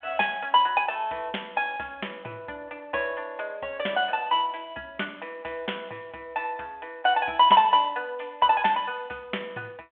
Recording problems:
telephone audio; 280 Hz to 3.4 kHz, G.726

